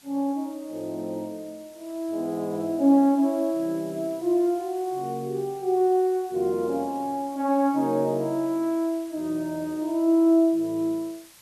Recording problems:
background hiss; slope +1 dB per octave, SNR 25 dB

